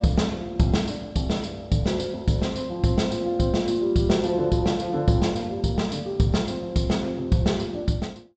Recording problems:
treble cut off; nothing above 8 kHz

